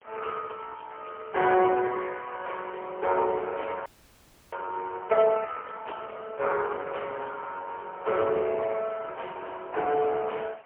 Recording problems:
telephone audio; 320 Hz to 3 kHz, AMR-NB, then MP3
wind noise; below 2.1 kHz, SNR 24 dB
audio freezing; at 4 s for 0.5 s

